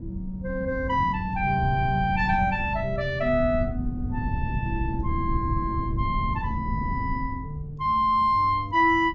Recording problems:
treble missing; nothing above 8 kHz
wind noise; below 140 Hz, SNR 7 dB

